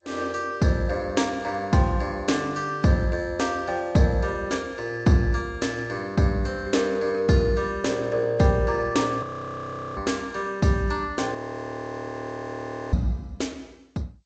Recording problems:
lossy codec; MP3, then G.722, log-spectral distance 2 dB, nothing above 7.6 kHz
audio freezing; at 9 s for 0.5 s and at 11 s for 1.5 s

